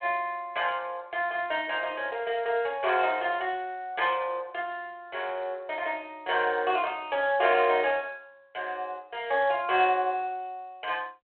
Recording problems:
phone line; 320 Hz to 3.4 kHz, G.726

